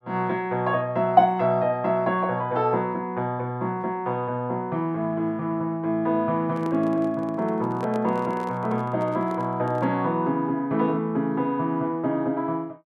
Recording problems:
microphone handling noise; from 6.5 to 10 s; peak -8 dB vs average level

